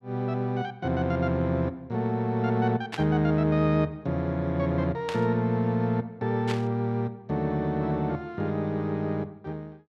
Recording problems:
static burst; at 3 s, at 5 s and at 6.5 s; peak -3 dB vs average level

